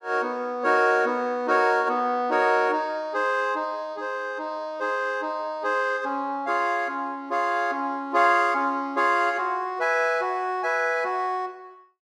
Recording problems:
none

